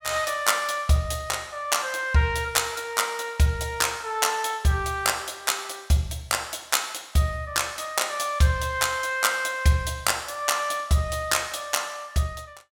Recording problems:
none

